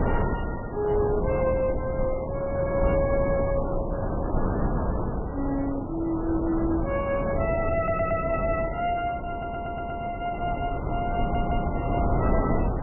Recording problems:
codec artefacts; MP3, log-spectral distance 3 dB, nothing above 2.8 kHz
wind on the microphone; below 480 Hz, SNR 1 dB
stutter; at 8 s, at 9.5 s and at 11 s

